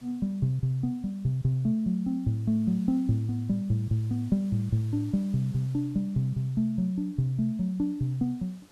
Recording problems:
background hiss; slope -3 dB per octave, SNR 29 dB

